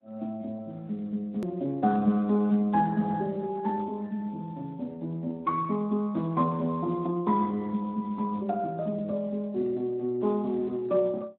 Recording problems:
phone line; 130 Hz to 2 kHz, Speex
hard cut with a click; at 1.5 s

